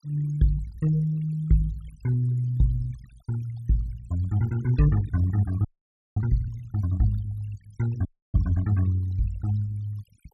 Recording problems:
noise reduction artefacts; signal-to-artefact ratio 21 dB
audio freezing; at 5.5 s for 0.5 s and at 8 s

